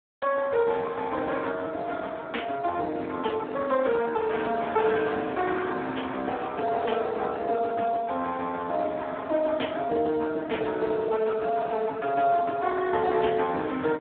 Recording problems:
telephone audio; 320 Hz to 3.5 kHz, Speex

